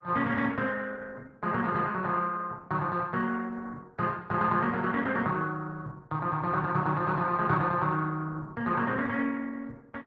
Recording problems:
lossy codec; Opus, log-spectral distance 3 dB

